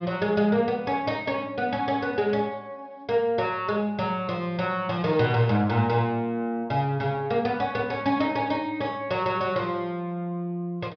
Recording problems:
treble cut off; nothing above 5.5 kHz

